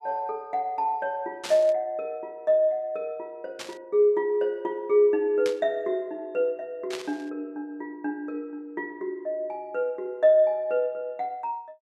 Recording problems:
burst of static; 4 times, first at 1.5 s; peak -4 dB vs average level

